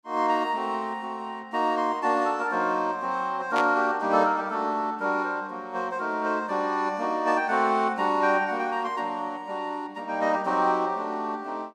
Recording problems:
static burst; at 3.5 s; peak -2 dB vs average level

